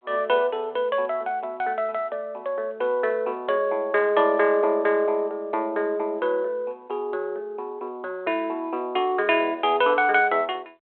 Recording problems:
phone line; 300 Hz to 3.4 kHz, G.726

